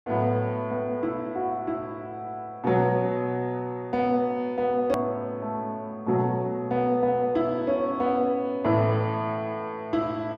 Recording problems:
hard cut with a click; at 5 s

